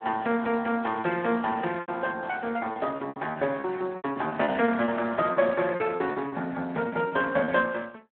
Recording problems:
telephone audio; 190 Hz to 3.7 kHz, Speex
packet loss; 12% of the sound replaced, filled with repeated pitch periods

